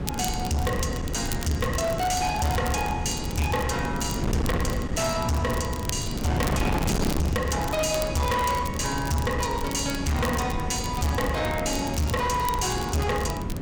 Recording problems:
distorted audio; hard clipping, signal-to-distortion ratio 6 dB
wind noise; below 360 Hz, SNR 4 dB
crackling; vinyl, SNR 13 dB

